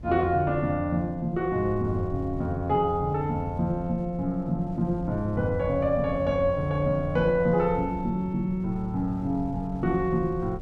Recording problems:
wind on the microphone; below 130 Hz, SNR 14 dB

